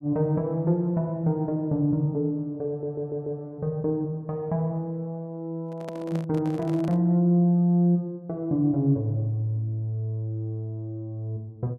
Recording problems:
audio stuttering; at 2.5 s
microphone handling noise; from 5.5 to 7 s; peak -9 dB vs average level

